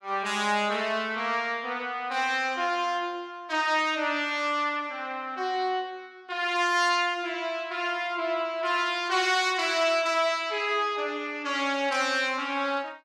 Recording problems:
none

